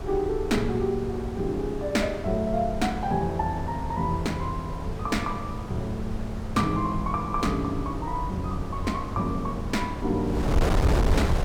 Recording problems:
wind noise; below 250 Hz, SNR 4 dB

